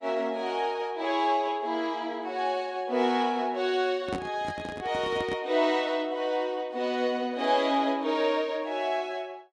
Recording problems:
lossy compression; Vorbis, log-spectral distance 2 dB, nothing above 10.1 kHz
handling noise; from 4 to 5.5 s; peak -2 dB vs average level

